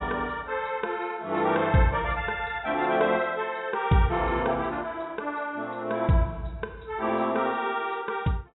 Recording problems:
treble missing; nothing above 3.8 kHz

